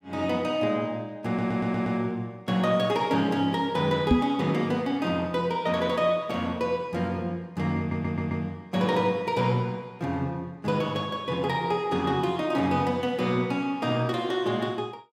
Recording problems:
stutter; at 1.5 s and at 8 s
knock on the microphone; at 4 s; peak +9 dB vs average level

